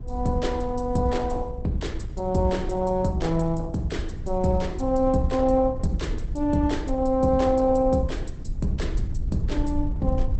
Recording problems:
lossy compression; Opus, log-spectral distance 2 dB, nothing above 8.2 kHz
rumble; below 78 Hz, SNR 8 dB

